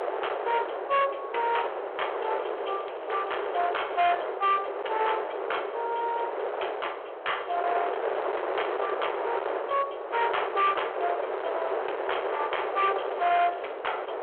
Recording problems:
phone line; 340 Hz to 3.3 kHz, G.726
distorted audio; hard clipping, signal-to-distortion ratio 10 dB
wind noise; below 1 kHz, SNR 3 dB
crackling; from 2.5 to 4 s and at 13 s; loose cable, SNR 25 dB

